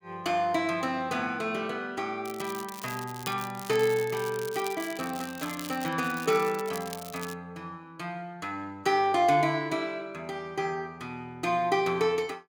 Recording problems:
crackling; from 2.5 to 7.5 s; loose cable, SNR 13 dB

